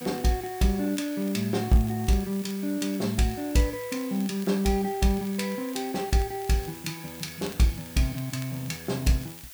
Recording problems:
hiss; slope +2 dB per octave, SNR 15 dB
crackling; vinyl, SNR 24 dB

